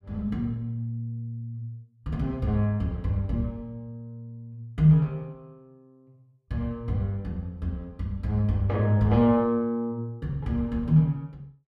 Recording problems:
none

